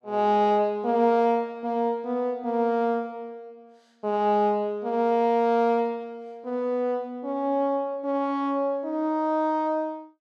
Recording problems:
none

